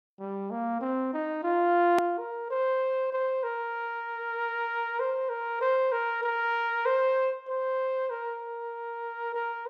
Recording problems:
hard cut with a click; at 2 s

